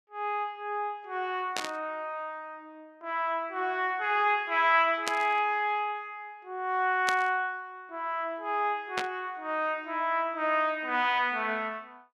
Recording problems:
static burst; 4 times, first at 1.5 s; peak +2 dB vs average level

